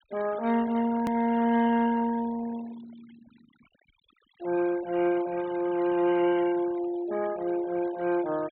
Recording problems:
treble cut off; nothing above 4 kHz
denoising artefacts; signal-to-artefact ratio 18 dB
edit click; at 1 s

